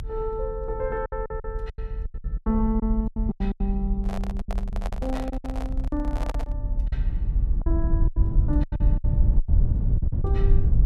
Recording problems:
low-frequency rumble; below 74 Hz, SNR -4 dB
lost packets; 15% of the sound replaced, filled with silence
handling noise; from 4 to 6.5 s; peak +2 dB vs average level

